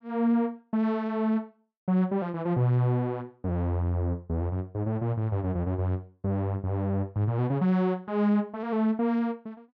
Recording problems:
none

